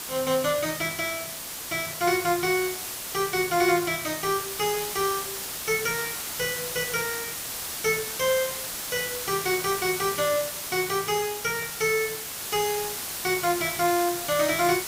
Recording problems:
hiss; slope 0 dB per octave, SNR 4 dB

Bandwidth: 15.5 kHz